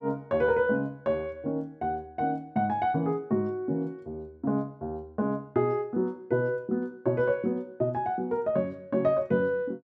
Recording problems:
none

